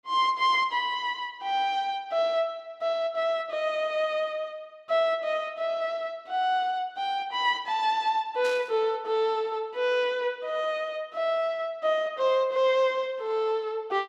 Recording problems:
static burst; at 8.5 s; peak -8 dB vs average level

